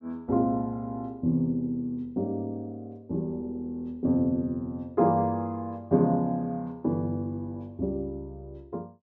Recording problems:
none

